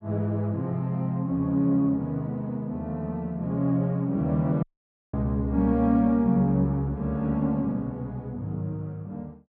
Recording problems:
audio cutting out; at 4.5 s for 0.5 s

